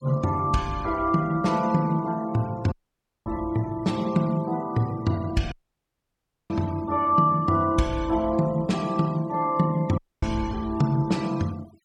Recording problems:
noise reduction artefacts; signal-to-artefact ratio 23 dB
audio cutting out; at 2.5 s for 0.5 s, at 5.5 s for 1 s and at 10 s

